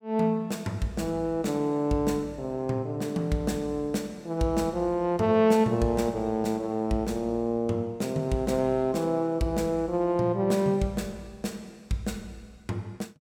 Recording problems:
none

